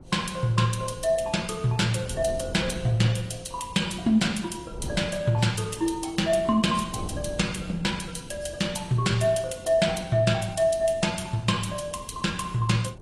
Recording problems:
lossy compression; AAC, log-spectral distance 4 dB, nothing above 11 kHz
wind noise; below 230 Hz, SNR 17 dB

